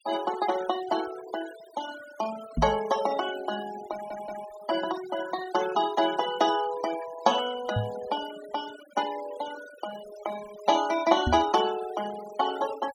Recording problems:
denoising artefacts; signal-to-artefact ratio 14 dB
microphone thump; at 2.5 s, at 8 s and at 11 s; peak +4 dB vs average level
audio stuttering; at 4 s

